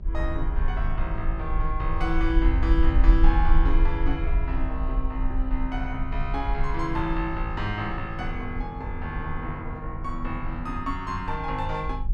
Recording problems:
electrical hum; 50 Hz, harmonics up to 600 Hz, SNR 11 dB
low-frequency rumble; below 48 Hz, SNR -2 dB

